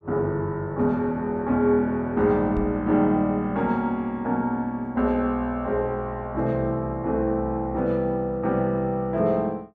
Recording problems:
knock on the microphone; at 2.5 s; peak -3 dB vs average level

